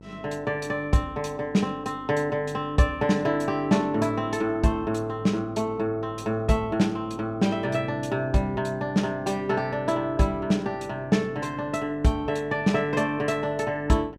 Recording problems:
hum; 50 Hz, harmonics up to 1.1 kHz, SNR 21 dB

